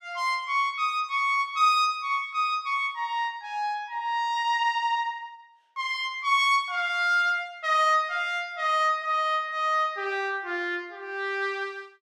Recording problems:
none

